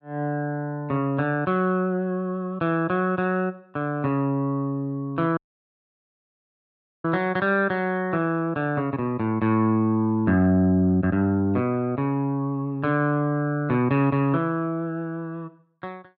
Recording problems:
dropout; at 5.5 s for 1.5 s

